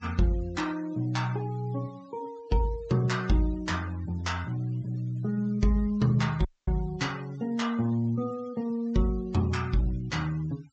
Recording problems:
low-pass filter; nothing above 8 kHz
noise reduction artefacts; signal-to-artefact ratio 22 dB
dropout; at 6.5 s

